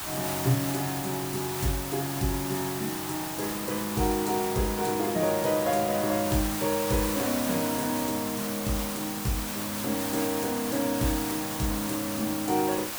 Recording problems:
background hiss; SNR 4 dB

